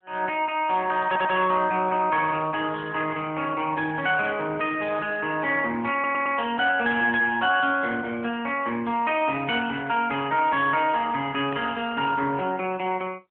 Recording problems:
phone line; 190 Hz to 3.3 kHz, AMR-NB
stutter; at 1 s and at 6 s
burst of static; at 12 s; peak -8 dB vs average level

